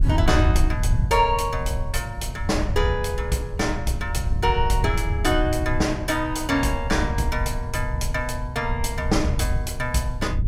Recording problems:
wind noise; below 90 Hz, SNR 3 dB

